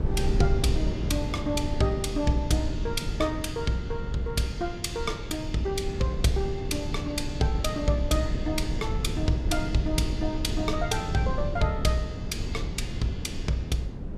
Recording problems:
rumble; below 150 Hz, SNR 3 dB

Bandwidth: 14.5 kHz